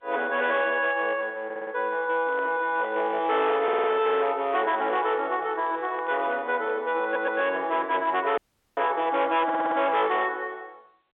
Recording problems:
phone line; 300 Hz to 3.8 kHz, G.711
distortion; hard clipping, signal-to-distortion ratio 11 dB
audio stuttering; 4 times, first at 1.5 s
handling noise; from 2 to 6.5 s; peak -9 dB vs average level
dropout; at 8.5 s

